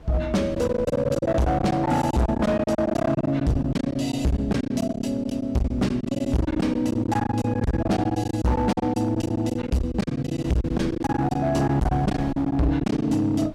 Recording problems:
distortion; hard clipping, signal-to-distortion ratio 7 dB
wind noise; below 300 Hz, SNR 20 dB
packet loss; 15% of the sound replaced, filled with silence

